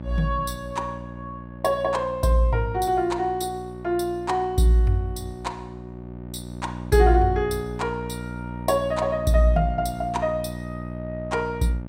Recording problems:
electrical hum; 60 Hz, harmonics up to 1.2 kHz, SNR 12 dB

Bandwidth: 16 kHz